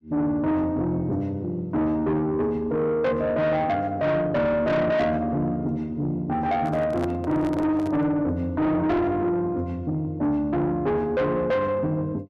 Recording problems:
distorted audio; soft clipping, signal-to-distortion ratio 8 dB
microphone handling noise; from 6.5 to 8 s; peak -3 dB vs average level

